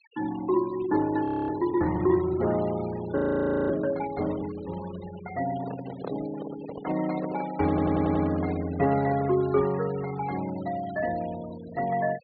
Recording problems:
treble cut off; nothing above 4.4 kHz
noise reduction artefacts; signal-to-artefact ratio 17 dB
frozen audio; at 1.5 s and at 3 s for 0.5 s
handling noise; from 5.5 to 9.5 s; peak -5 dB vs average level
audio stuttering; at 7.5 s

